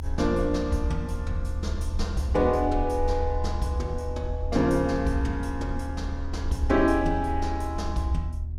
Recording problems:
hum; 60 Hz, harmonics up to 720 Hz, SNR 20 dB
low-frequency rumble; below 78 Hz, SNR 5 dB

